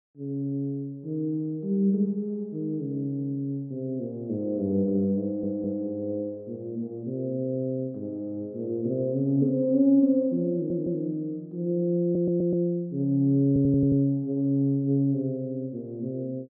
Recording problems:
audio stuttering; 4 times, first at 5 s

